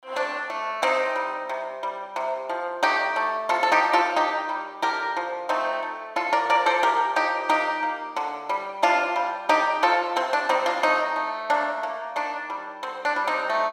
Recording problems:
none

